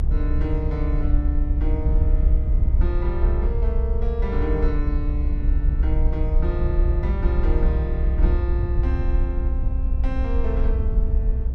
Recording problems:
rumble; below 64 Hz, SNR -8 dB

